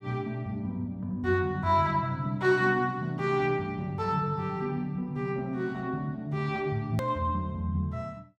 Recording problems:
hard cut with a click; at 7 s

